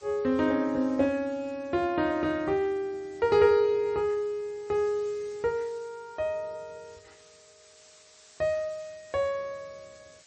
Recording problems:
lossy compression; MP3, log-spectral distance 8 dB, nothing above 6.7 kHz
hiss; slope +2 dB per octave, SNR 27 dB

